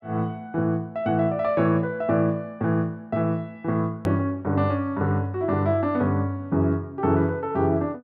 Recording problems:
edit click; at 4 s

